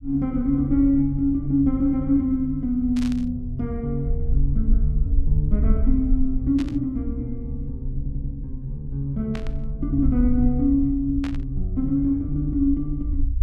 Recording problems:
low-frequency rumble; below 58 Hz, SNR 6 dB
burst of static; 4 times, first at 3 s; peak -9 dB vs average level
audio stuttering; at 8 s

